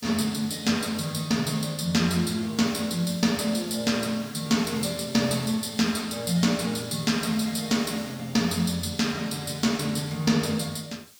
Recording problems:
background hiss; slope +3 dB per octave, SNR 22 dB

